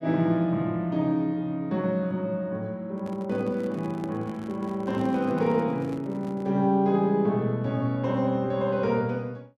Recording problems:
microphone handling noise; from 3 to 6.5 s; peak -8 dB vs average level

